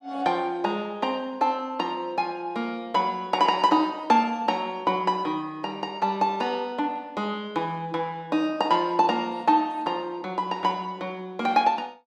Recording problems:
none

